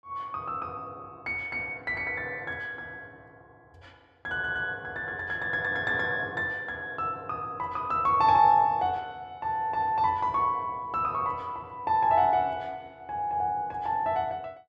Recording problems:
audio stuttering; at 4.5 s

